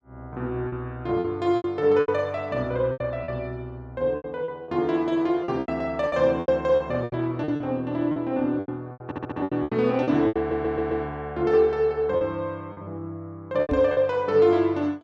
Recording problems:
packet loss; 12% of the sound replaced, filled with repeated pitch periods
audio stuttering; at 9 s and at 10 s
microphone thump; at 14 s; peak +1 dB vs average level

